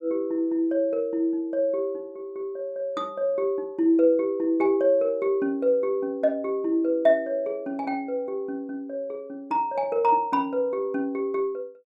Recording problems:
none

